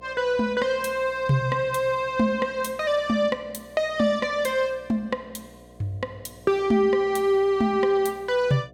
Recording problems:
hum; 60 Hz, harmonics up to 720 Hz, SNR 26 dB

